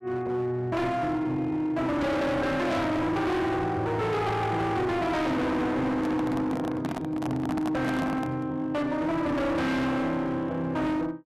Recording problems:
distorted audio; hard clipping, signal-to-distortion ratio 6 dB
handling noise; from 6 to 8.5 s; peak 0 dB vs average level

